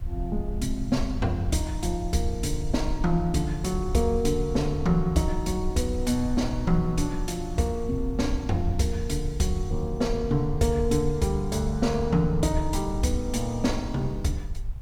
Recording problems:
hiss; SNR 28 dB
rumble; below 68 Hz, SNR 7 dB

